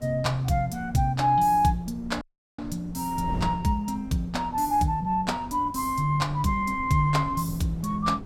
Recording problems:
wind on the microphone; below 200 Hz, SNR 15 dB
dropout; at 2 s

